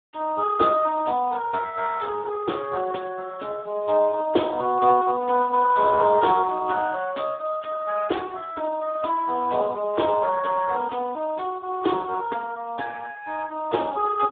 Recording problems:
phone line; 240 Hz to 3.6 kHz, Speex

